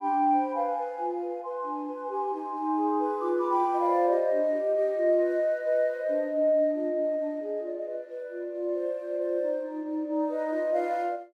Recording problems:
none

